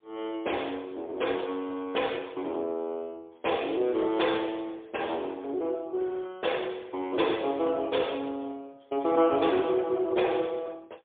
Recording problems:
phone line; 320 Hz to 3.5 kHz, AMR-NB, then MP3

